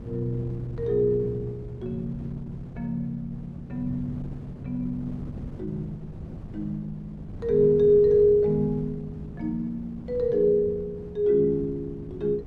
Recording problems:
wind on the microphone; below 230 Hz, SNR 15 dB

